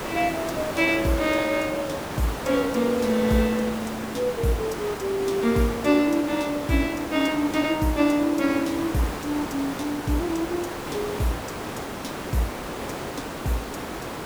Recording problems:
hiss; slope -6 dB per octave, SNR 7 dB

